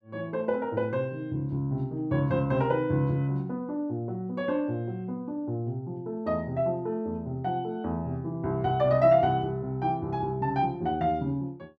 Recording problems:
none

